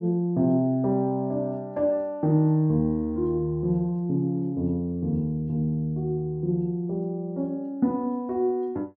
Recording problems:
none

